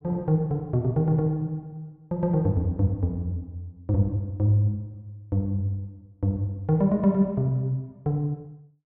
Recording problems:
none

